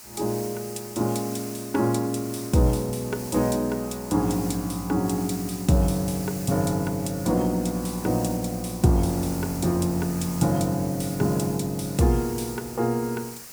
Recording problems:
background hiss; SNR 13 dB

